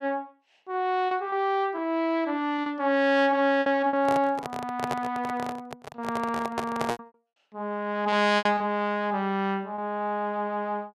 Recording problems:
packet loss; 6% of the sound replaced, filled with repeated pitch periods
microphone handling noise; from 4 to 7 s; peak +1 dB vs average level

